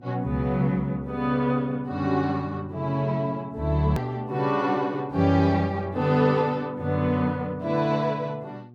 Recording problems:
hum; 60 Hz, harmonics up to 720 Hz, SNR 22 dB
click at an edit; at 4 s

